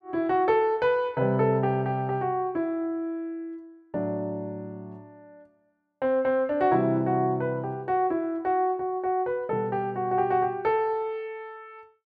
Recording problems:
none

